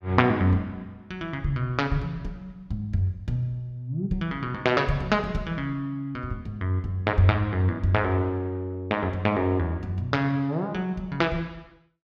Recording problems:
none

